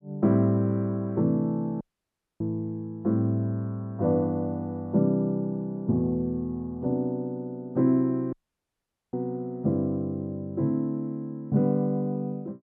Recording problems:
dropout; at 2 s for 0.5 s and at 8.5 s for 1 s

